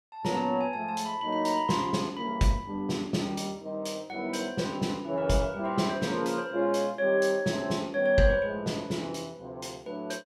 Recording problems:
none

